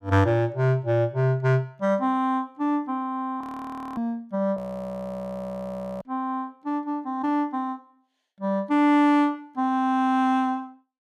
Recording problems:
frozen audio; at 3.5 s for 0.5 s and at 4.5 s for 1.5 s

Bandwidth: 14.5 kHz